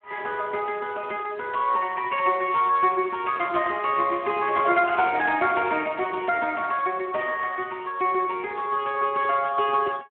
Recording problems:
phone line; 240 Hz to 3.3 kHz, Speex

